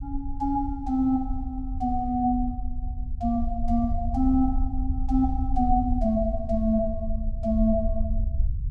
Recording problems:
rumble; below 66 Hz, SNR 5 dB

